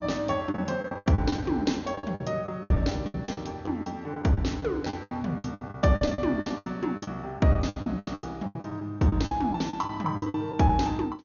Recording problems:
lossy codec; MP2, log-spectral distance 2 dB, nothing above 6.7 kHz
lost packets; 19% of the sound replaced, filled with the last packet

